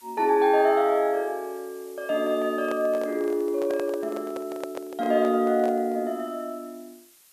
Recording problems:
background hiss; slope +2 dB per octave, SNR 27 dB
microphone handling noise; from 2.5 to 6 s; peak -5 dB vs average level

